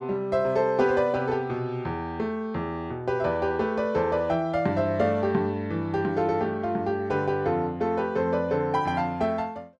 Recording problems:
none

